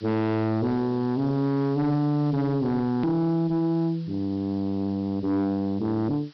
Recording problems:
treble missing; nothing above 5.5 kHz
distortion; soft clipping, signal-to-distortion ratio 7 dB
hiss; SNR 27 dB
hard cut with a click; at 3 s

